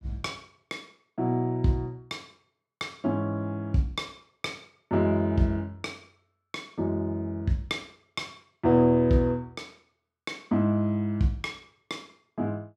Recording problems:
none

